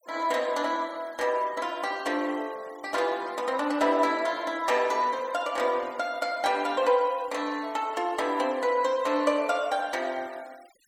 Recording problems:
denoising artefacts; signal-to-artefact ratio 23 dB

